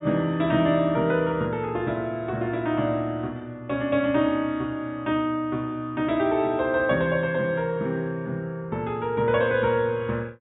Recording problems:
low-pass filter; nothing above 3.8 kHz

